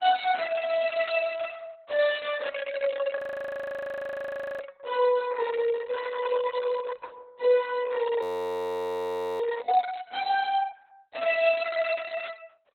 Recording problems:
codec artefacts; Opus, log-spectral distance 5 dB, nothing above 18.9 kHz
frozen audio; at 3 s for 1.5 s and at 8 s for 1 s

